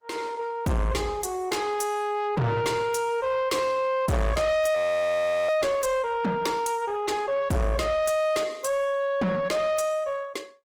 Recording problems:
lossy compression; Opus, log-spectral distance 3 dB, nothing above 19 kHz
distorted audio; soft clipping, signal-to-distortion ratio 6 dB
audio freezing; at 5 s for 0.5 s

